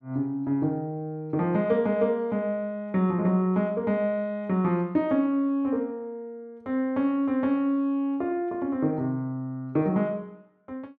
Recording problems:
none

